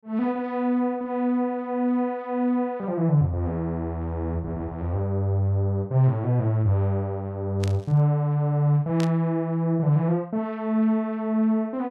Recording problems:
static burst; at 7.5 s and at 9 s; peak -7 dB vs average level

